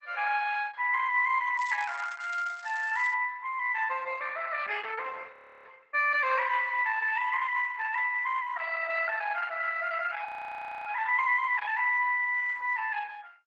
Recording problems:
lossy codec; Opus, log-spectral distance 4 dB
crackling; from 1.5 to 3 s; loose cable, SNR 24 dB
frozen audio; at 5.5 s and at 10 s for 0.5 s

